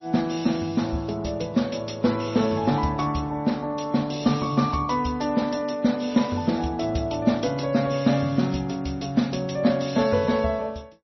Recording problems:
lossy codec; MP3, log-spectral distance 4 dB, nothing above 5.8 kHz

